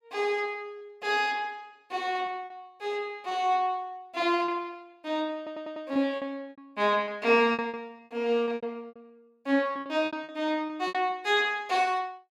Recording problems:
packet loss; 9% of the sound replaced, filled with repeated pitch periods
audio stuttering; at 5.5 s

